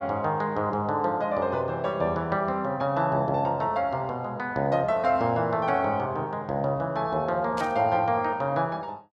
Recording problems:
burst of static; at 7.5 s; peak -10 dB vs average level

